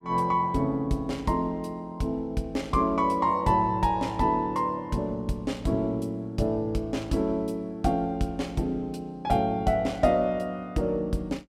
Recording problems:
none

